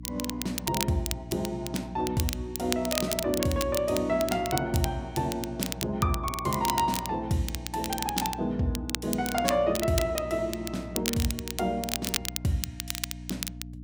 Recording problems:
hum; 60 Hz, harmonics up to 300 Hz, SNR 13 dB
crackle; vinyl, SNR 5 dB

